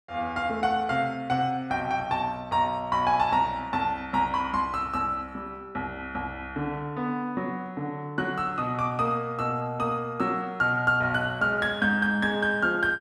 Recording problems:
none

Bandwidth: 13 kHz